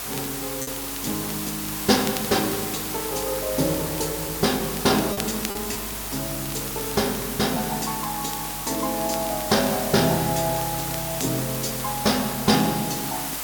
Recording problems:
hum; 50 Hz, harmonics up to 500 Hz, SNR 19 dB
background hiss; SNR 3 dB
crackle; vinyl, SNR 17 dB
lost packets; 1.6% of the sound replaced, filled with repeated pitch periods

